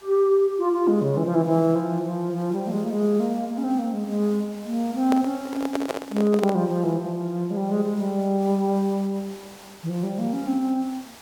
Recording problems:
background hiss; SNR 23 dB
microphone handling noise; from 5 to 6.5 s; peak +1 dB vs average level

